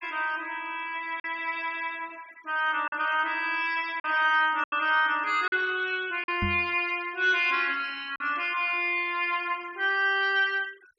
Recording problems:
noise reduction artefacts; signal-to-artefact ratio 24 dB
packet loss; 3% of the sound replaced, filled with silence
microphone thump; at 6.5 s; peak -1 dB vs average level

